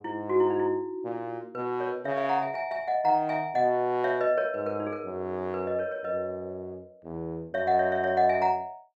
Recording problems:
none

